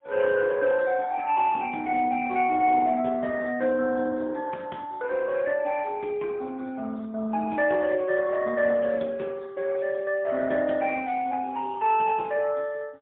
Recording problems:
phone line; 170 Hz to 3.5 kHz, AMR-NB, then MP3

